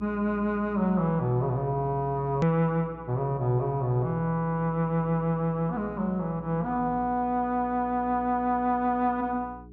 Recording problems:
low-pass filter; nothing above 8 kHz
hum; 60 Hz, harmonics up to 420 Hz, SNR 19 dB
hard cut with a click; at 2.5 s

